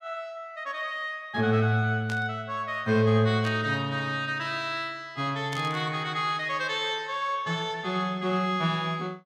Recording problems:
static burst; at 2 s, at 3.5 s and at 5.5 s; peak -7 dB vs average level

